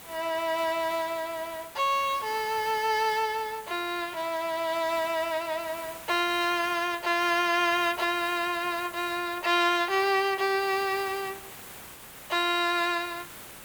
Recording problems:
background hiss; slope -3 dB per octave, SNR 16 dB

